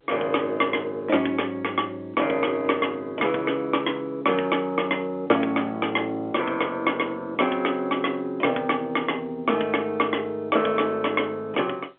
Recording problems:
phone line; 300 Hz to 3.4 kHz, G.711

